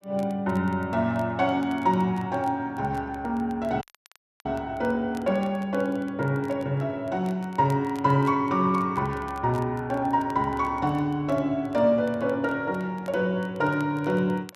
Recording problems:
crackling; vinyl, SNR 28 dB
dropout; at 4 s for 0.5 s

